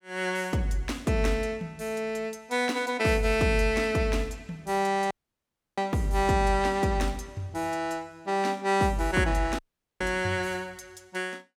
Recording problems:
dropout; at 5 s for 0.5 s and at 9.5 s

